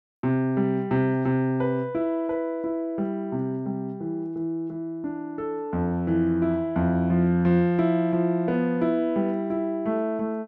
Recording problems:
none

